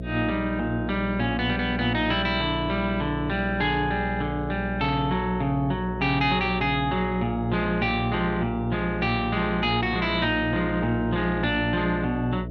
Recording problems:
hum; 60 Hz, harmonics up to 660 Hz, SNR 8 dB

